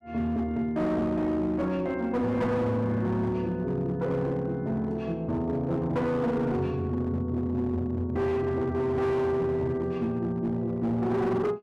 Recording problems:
distortion; hard clipping, signal-to-distortion ratio 11 dB

